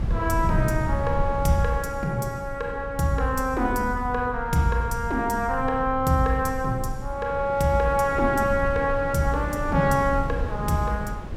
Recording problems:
rumble; below 98 Hz, SNR 9 dB
wind noise; below 380 Hz, SNR 13 dB

